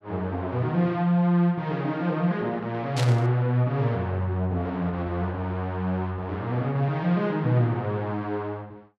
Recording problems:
static burst; at 3 s; peak -1 dB vs average level

